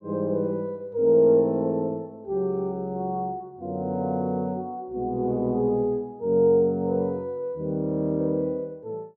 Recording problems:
none

